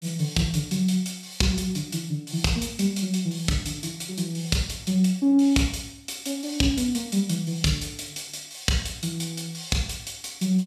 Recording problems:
none

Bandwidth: 14.5 kHz